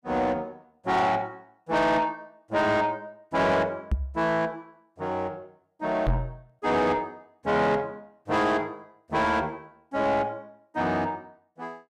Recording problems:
distortion; soft clipping, signal-to-distortion ratio 10 dB
microphone bump; at 4 s and at 6 s; peak +4 dB vs average level

